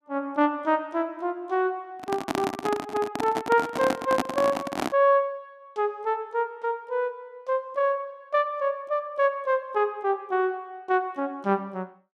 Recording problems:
microphone handling noise; from 2 to 5 s; peak +5 dB vs average level

